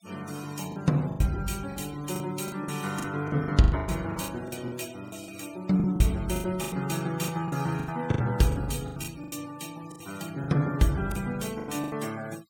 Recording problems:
noise reduction artefacts; signal-to-artefact ratio 18 dB
lost packets; 15% of the sound replaced, filled with the last packet

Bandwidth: 17.5 kHz